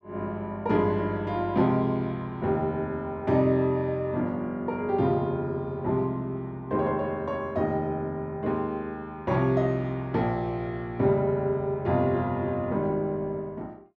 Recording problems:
none

